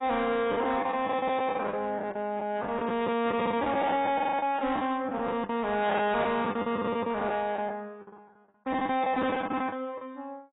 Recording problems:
lossy compression; AAC, then AAC, log-spectral distance 3 dB, nothing above 3.8 kHz
distorted audio; soft clipping, signal-to-distortion ratio 10 dB
lost packets; 15% of the sound replaced, filled with the last packet

